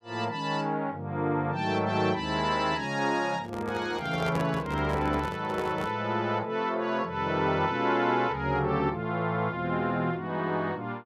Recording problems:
microphone handling noise; from 3.5 to 6 s; peak -1 dB vs average level

